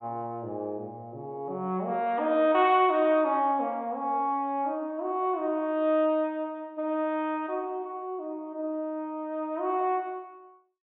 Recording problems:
treble missing; nothing above 4 kHz

